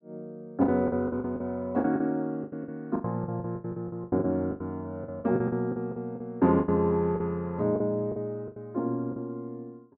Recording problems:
lost packets; 16% of the sound replaced, filled with the last packet

